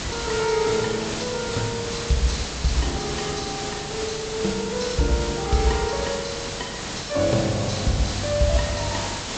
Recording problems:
treble cut off; nothing above 8 kHz
hum; 50 Hz, harmonics up to 300 Hz, SNR 20 dB
hiss; slope -2 dB per octave, SNR 4 dB

